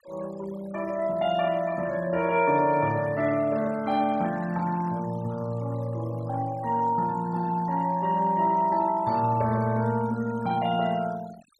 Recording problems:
noise reduction artefacts; signal-to-artefact ratio 22 dB

